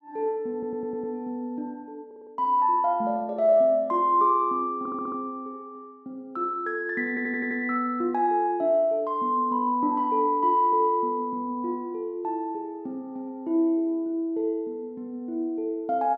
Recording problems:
stutter; 4 times, first at 0.5 s

